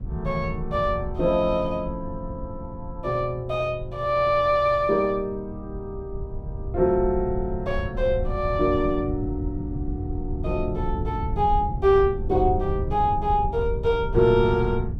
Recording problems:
rumble; below 110 Hz, SNR 9 dB

